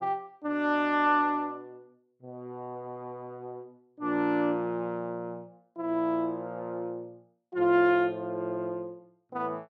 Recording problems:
none

